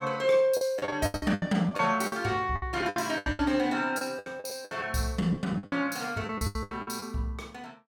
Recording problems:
lost packets; 18% of the sound replaced, filled with the last packet

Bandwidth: 17.5 kHz